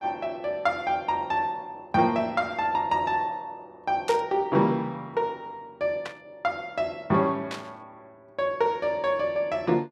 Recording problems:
burst of static; at 4 s, at 6 s and at 7.5 s; peak -4 dB vs average level

